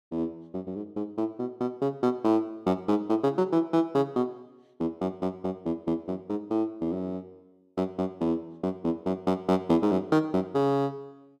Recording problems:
none

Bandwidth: 13.5 kHz